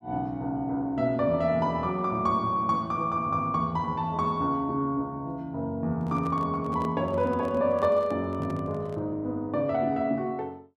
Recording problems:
microphone handling noise; from 6 to 9 s; peak -8 dB vs average level

